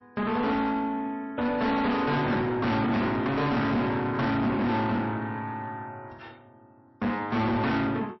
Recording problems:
lossy compression; MP3, log-spectral distance 2 dB, nothing above 5.7 kHz
distorted audio; soft clipping, signal-to-distortion ratio 7 dB

